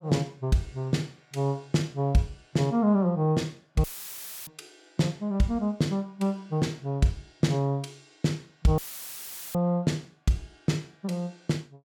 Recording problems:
dropout; at 4 s for 0.5 s and at 9 s for 1 s; filled with static

